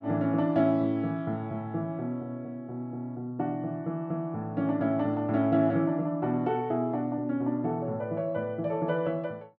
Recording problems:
none

